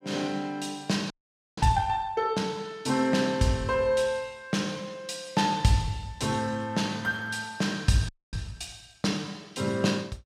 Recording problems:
frozen audio; at 1 s and at 8 s

